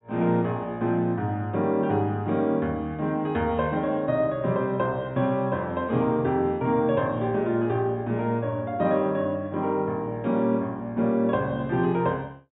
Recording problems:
low-pass filter; nothing above 4 kHz

